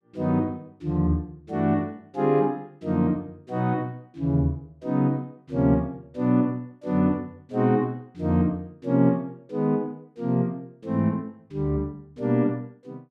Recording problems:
none

